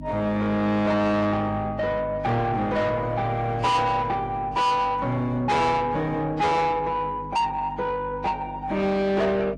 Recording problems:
lossy compression; AAC, log-spectral distance 2 dB, nothing above 10.1 kHz
distortion; soft clipping, signal-to-distortion ratio 8 dB
hum; 50 Hz, harmonics up to 300 Hz, SNR 15 dB

